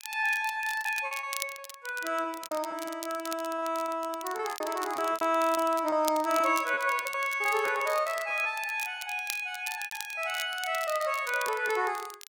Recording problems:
crackle; vinyl, SNR 13 dB
lost packets; 12% of the sound replaced, filled with repeated pitch periods

